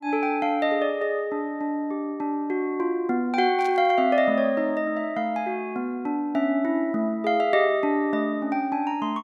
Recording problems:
static burst; at 3.5 s; peak -15 dB vs average level

